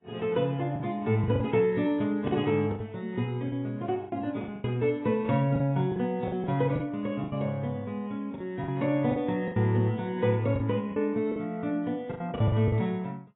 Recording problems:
lossy codec; AAC, log-spectral distance 2 dB, nothing above 3.5 kHz
lost packets; 10% of the sound replaced, filled with the last packet

